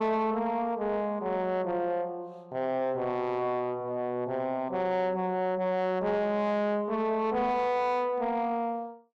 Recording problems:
distorted audio; soft clipping, signal-to-distortion ratio 11 dB

